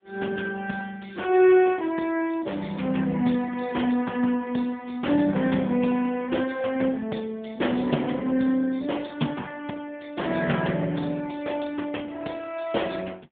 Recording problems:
phone line; 170 Hz to 3.6 kHz, AMR-NB

